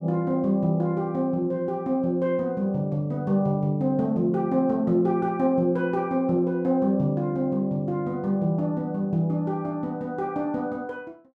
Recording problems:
none

